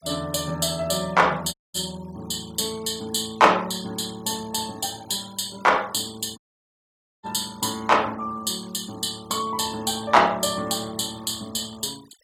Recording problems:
noise reduction artefacts; signal-to-artefact ratio 22 dB
dropout; at 1.5 s and at 6.5 s for 1 s

